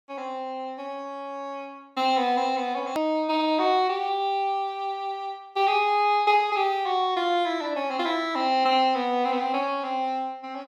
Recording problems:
edit click; at 3 s

